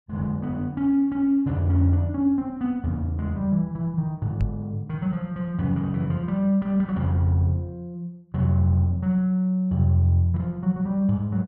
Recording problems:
microphone bump; at 4.5 s; peak +2 dB vs average level

